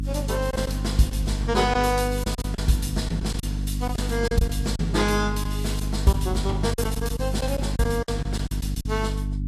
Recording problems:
codec artefacts; Vorbis, log-spectral distance 3 dB, nothing above 12.7 kHz
mains hum; 50 Hz, harmonics up to 300 Hz, SNR 2 dB
lost packets; 8% of the sound replaced, filled with silence

